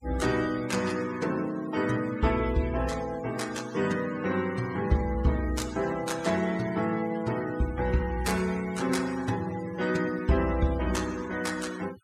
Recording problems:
noise reduction artefacts; signal-to-artefact ratio 16 dB

